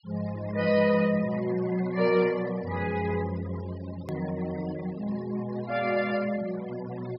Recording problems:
treble cut off; nothing above 5.4 kHz
noise reduction artefacts; signal-to-artefact ratio 18 dB
edit click; at 4 s

